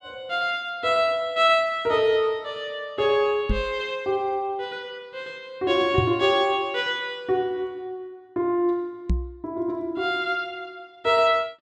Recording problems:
microphone bump; at 3.5 s, at 6 s and at 9 s; peak +3 dB vs average level

